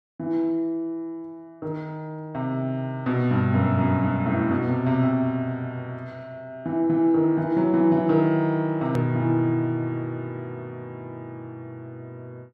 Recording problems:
click at an edit; at 9 s

